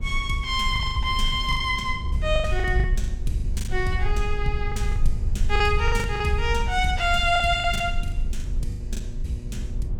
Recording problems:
electrical hum; 60 Hz, harmonics up to 600 Hz, SNR 20 dB
low-frequency rumble; below 64 Hz, SNR 4 dB
packet loss; 13% of the sound replaced, filled with the last packet

